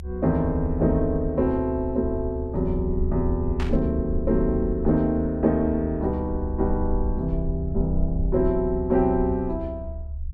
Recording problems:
rumble; below 72 Hz, SNR 6 dB
burst of static; at 3.5 s; peak -7 dB vs average level

